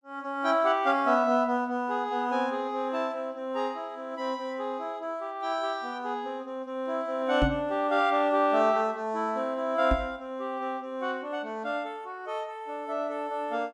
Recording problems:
microphone thump; at 7.5 s and at 10 s; peak +6 dB vs average level

